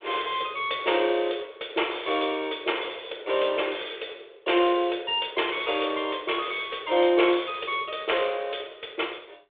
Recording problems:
telephone audio; 300 Hz to 3.6 kHz, G.726

